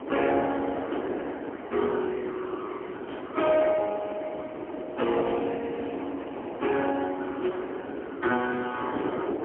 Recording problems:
phone line; 260 Hz to 3.2 kHz, AMR-NB, then MP3
background hiss; SNR 27 dB
wind noise; below 580 Hz, SNR 7 dB

